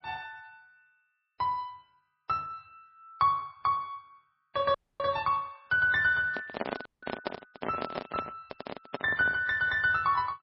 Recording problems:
lossy codec; MP3, log-spectral distance 3 dB, nothing above 4.6 kHz
audio cutting out; at 5 s and at 7 s
microphone handling noise; from 6 to 9.5 s; peak 0 dB vs average level

